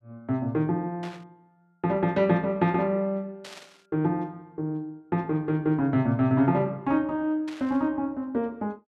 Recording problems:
static burst; at 1 s, at 3.5 s and at 7.5 s; peak -12 dB vs average level

